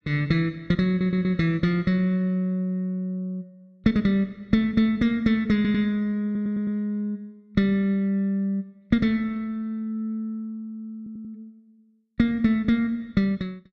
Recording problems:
audio stuttering; 4 times, first at 1 s

